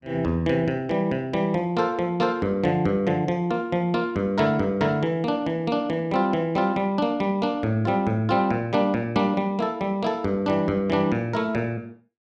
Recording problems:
none

